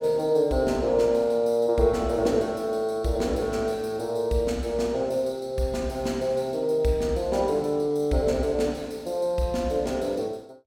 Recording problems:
none

